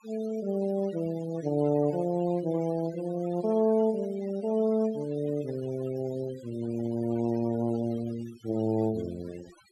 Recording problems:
denoising artefacts; signal-to-artefact ratio 19 dB

